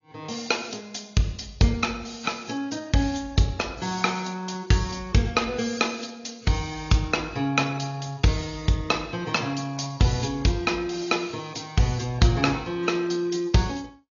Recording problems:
treble cut off; nothing above 6.9 kHz
lossy compression; AAC, log-spectral distance 4 dB

